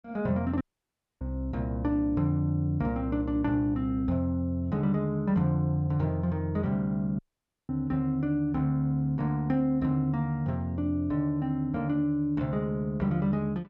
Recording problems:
audio cutting out; at 0.5 s for 0.5 s and at 7 s for 0.5 s

